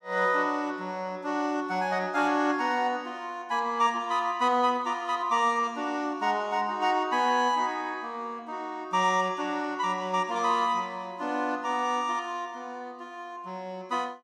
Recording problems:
none

